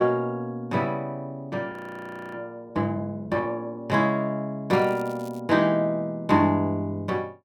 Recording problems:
audio freezing; at 1.5 s for 0.5 s
crackling; at 4.5 s; loose cable, SNR 25 dB

